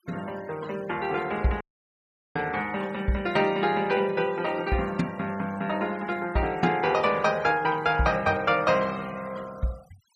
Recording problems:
denoising artefacts; signal-to-artefact ratio 21 dB
audio cutting out; at 1.5 s for 0.5 s

